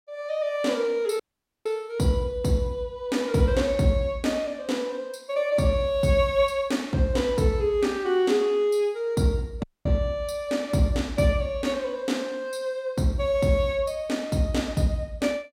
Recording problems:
dropout; at 1 s and at 9.5 s

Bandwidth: 16 kHz